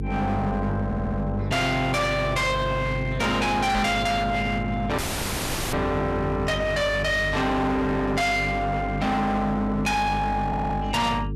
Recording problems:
distorted audio; hard clipping, signal-to-distortion ratio 7 dB
hum; 50 Hz, harmonics up to 450 Hz, SNR 8 dB
audio stuttering; at 1 s and at 10 s
microphone thump; at 4 s; peak +2 dB vs average level
dropout; at 5 s for 1 s

